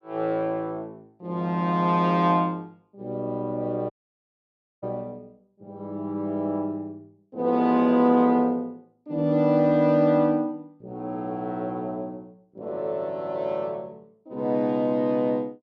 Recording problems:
audio cutting out; at 4 s for 1 s

